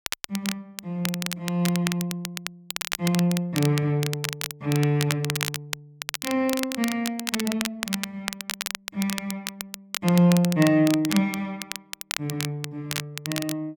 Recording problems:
crackling; vinyl, SNR 6 dB

